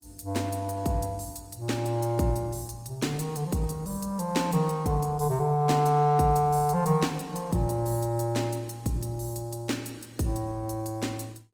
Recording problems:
codec artefacts; Opus, log-spectral distance 4 dB, nothing above 19 kHz

